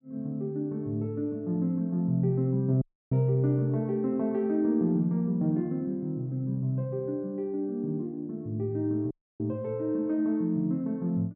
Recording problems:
audio cutting out; at 3 s and at 9 s

